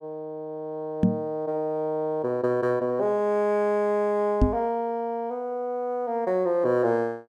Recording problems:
microphone bump; at 1 s and at 4.5 s; peak +8 dB vs average level

